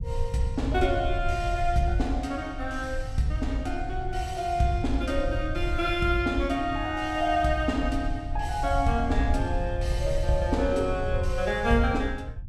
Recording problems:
rumble; below 82 Hz, SNR 6 dB

